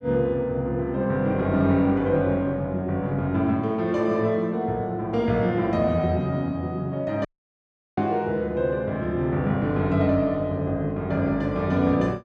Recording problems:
dropout; at 7.5 s for 0.5 s

